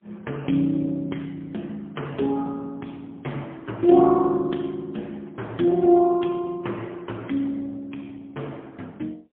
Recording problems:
telephone audio; 170 Hz to 3.4 kHz, AMR-NB, then MP3

